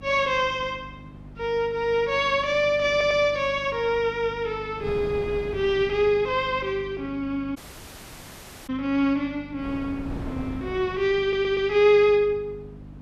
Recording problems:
hum; 50 Hz, harmonics up to 300 Hz, SNR 20 dB
wind on the microphone; below 410 Hz, SNR 19 dB
audio stuttering; at 3 s and at 11 s
audio cutting out; at 7.5 s for 1 s

